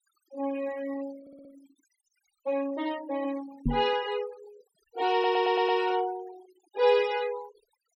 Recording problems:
noise reduction artefacts; signal-to-artefact ratio 20 dB
audio stuttering; at 1 s and at 5 s
microphone thump; at 3.5 s; peak +4 dB vs average level

